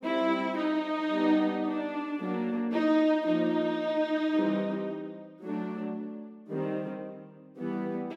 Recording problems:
none

